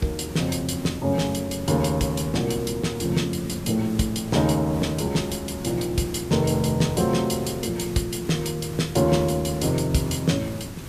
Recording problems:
hiss; SNR 13 dB

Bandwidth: 14.5 kHz